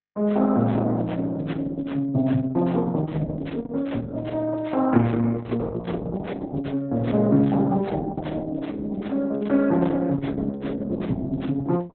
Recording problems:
codec artefacts; Opus, log-spectral distance 3 dB, nothing above 4 kHz

